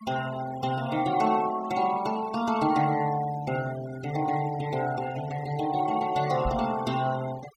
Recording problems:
denoising artefacts; signal-to-artefact ratio 16 dB
microphone thump; at 6.5 s; peak -1 dB vs average level

